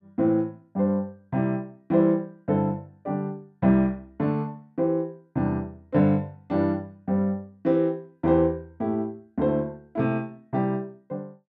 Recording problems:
none

